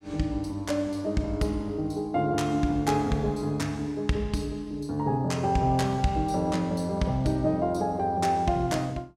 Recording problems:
none

